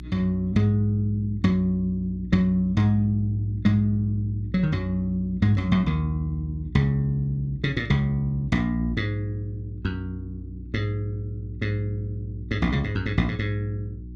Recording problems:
electrical hum; 60 Hz, harmonics up to 360 Hz, SNR 13 dB

